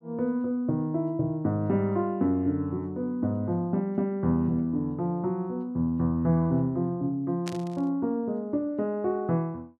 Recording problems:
static burst; at 7.5 s; peak -6 dB vs average level

